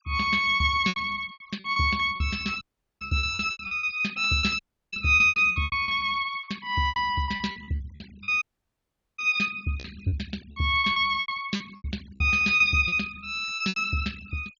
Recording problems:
treble cut off; nothing above 7.1 kHz
denoising artefacts; signal-to-artefact ratio 24 dB
lost packets; 16% of the sound replaced, filled with repeated pitch periods
audio cutting out; at 2.5 s, at 4.5 s and at 8.5 s for 1 s

